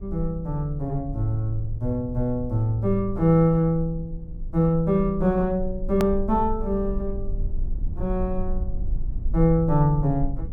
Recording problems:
low-frequency rumble; below 52 Hz, strongest tone 20 Hz, SNR 9 dB
hard cut with a click; at 6 s

